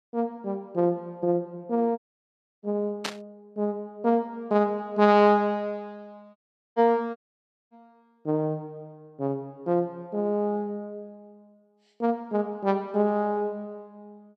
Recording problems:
dropout; at 2 s for 0.5 s, at 6.5 s and at 7 s for 0.5 s
burst of static; at 3 s; peak +1 dB vs average level

